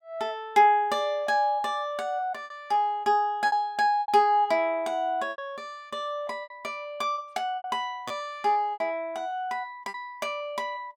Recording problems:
lost packets; 6% of the sound replaced, filled with repeated pitch periods

